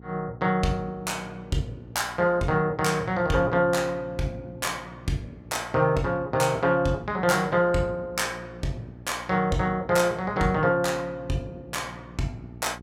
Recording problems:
hum; 60 Hz, harmonics up to 840 Hz, SNR 20 dB

